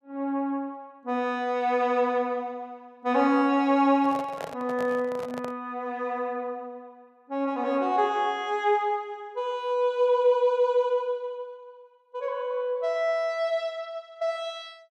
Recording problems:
microphone handling noise; from 4 to 5.5 s; peak -5 dB vs average level

